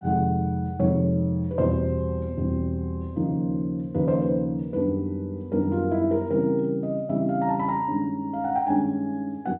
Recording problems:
low-pass filter; nothing above 3.9 kHz

